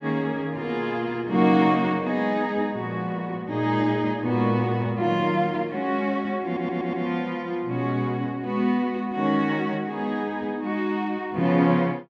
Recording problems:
audio stuttering; at 6.5 s

